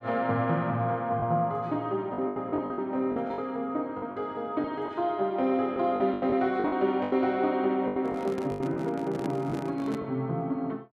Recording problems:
lost packets; 10% of the sound replaced, filled with the last packet
microphone handling noise; from 8 to 10 s; peak -1 dB vs average level

